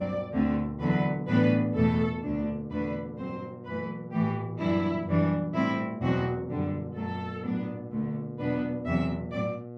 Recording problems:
electrical hum; 60 Hz, harmonics up to 1.2 kHz, SNR 14 dB

